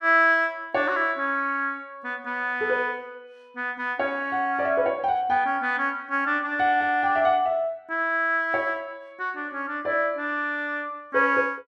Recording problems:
none

